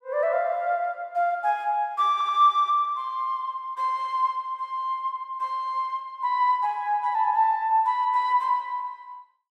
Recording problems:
audio stuttering; at 2 s

